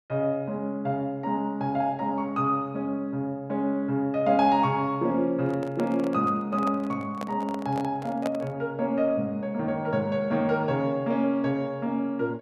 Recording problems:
microphone handling noise; from 5.5 to 8.5 s; peak -1 dB vs average level

